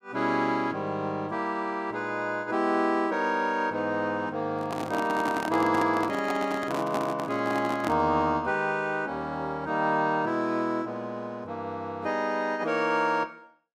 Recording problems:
microphone handling noise; from 4.5 to 8 s; peak 0 dB vs average level

